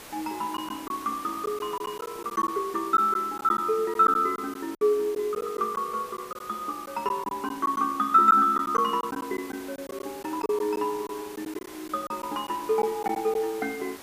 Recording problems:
background hiss; slope -3 dB per octave, SNR 17 dB
lost packets; 7% of the sound replaced, filled with silence

